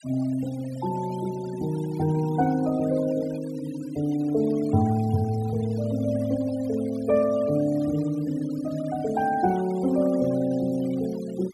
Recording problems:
noise reduction artefacts; signal-to-artefact ratio 21 dB

